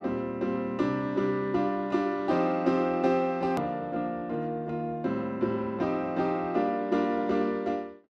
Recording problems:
edit click; at 3.5 s

